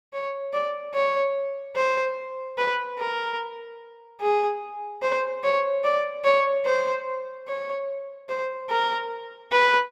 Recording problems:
none

